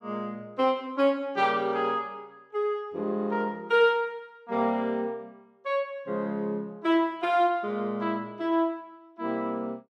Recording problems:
none

